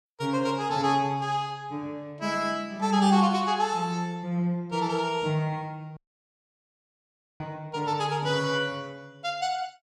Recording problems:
audio cutting out; at 6 s for 1.5 s

